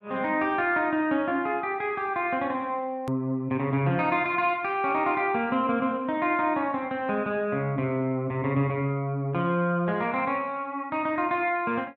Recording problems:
edit click; at 3 s

